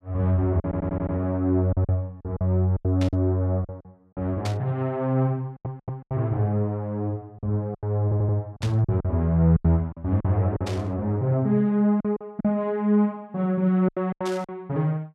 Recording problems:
packet loss; 9% of the sound replaced, filled with silence
stutter; at 0.5 s, at 5.5 s and at 8 s
burst of static; 5 times, first at 3 s; peak -6 dB vs average level

